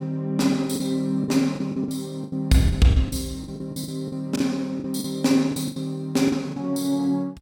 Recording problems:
lost packets; 12% of the sound replaced, filled with the last packet

